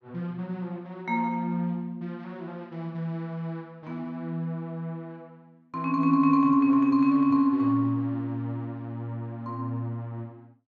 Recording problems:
none

